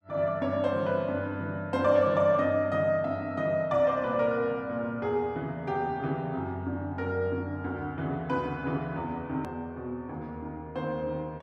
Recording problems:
hard cut with a click; at 9.5 s

